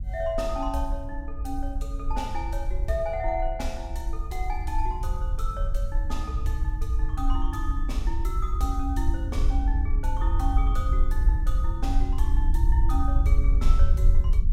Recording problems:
low-frequency rumble; below 56 Hz, SNR -6 dB

